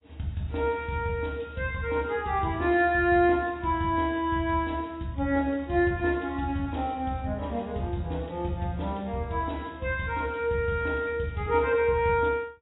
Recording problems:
codec artefacts; AAC, log-spectral distance 2 dB, nothing above 3.9 kHz

